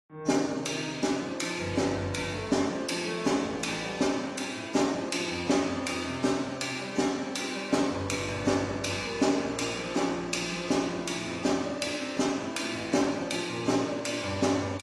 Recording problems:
codec artefacts; AAC, log-spectral distance 4 dB, nothing above 11.3 kHz

